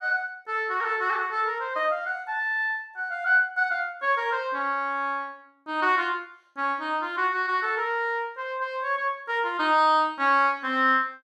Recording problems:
none

